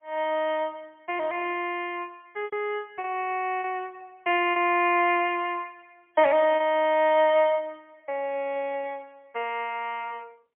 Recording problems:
telephone audio; 300 Hz to 3.2 kHz, AMR-NB, then MP3
lost packets; 3% of the sound replaced, filled with repeated pitch periods

